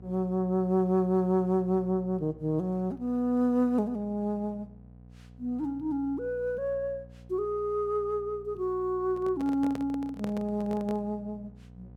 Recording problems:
hum; 60 Hz, harmonics up to 780 Hz, SNR 21 dB
microphone handling noise; from 9 to 11 s; peak -5 dB vs average level

